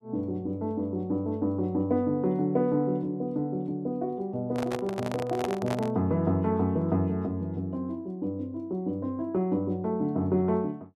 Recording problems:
microphone handling noise; from 4.5 to 6 s; peak +1 dB vs average level

